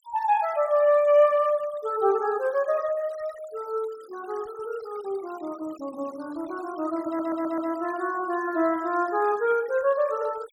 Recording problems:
denoising artefacts; signal-to-artefact ratio 23 dB
stutter; at 7 s

